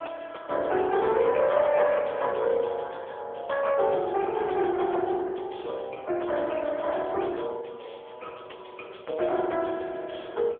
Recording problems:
telephone audio; 300 Hz to 3.4 kHz, AMR-NB

